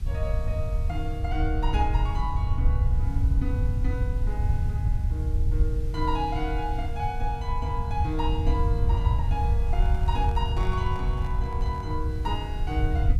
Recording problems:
background hiss; slope -1 dB per octave, SNR 23 dB
rumble; below 86 Hz, SNR -5 dB
microphone handling noise; from 9.5 to 12 s; peak -5 dB vs average level

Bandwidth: 14 kHz